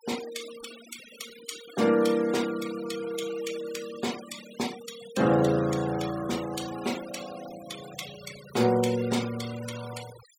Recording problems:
denoising artefacts; signal-to-artefact ratio 13 dB

